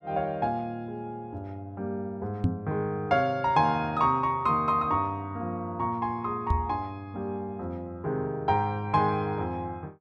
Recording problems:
microphone bump; at 2.5 s and at 6.5 s; peak +6 dB vs average level

